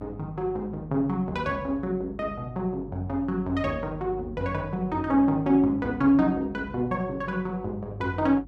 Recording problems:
electrical hum; 50 Hz, harmonics up to 300 Hz, SNR 18 dB

